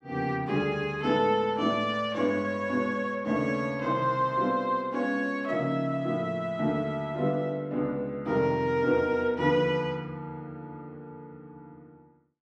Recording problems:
none

